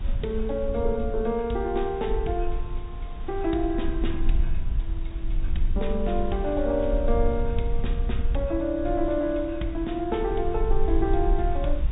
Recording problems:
low-pass filter; nothing above 3.8 kHz
lossy compression; G.722, log-spectral distance 2 dB
hiss; SNR 20 dB
low-frequency rumble; below 50 Hz, strongest tone 18 Hz, SNR 4 dB

